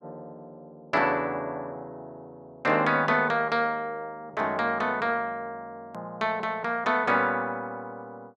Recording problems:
hard cut with a click; at 6 s

